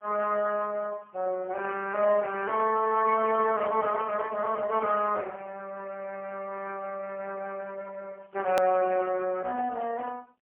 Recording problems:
phone line; 280 Hz to 3.1 kHz, AMR-NB, then MP3
edit click; at 8.5 s

